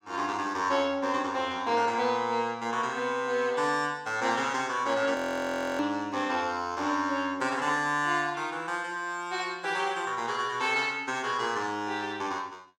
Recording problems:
audio freezing; at 5 s for 0.5 s

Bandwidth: 16 kHz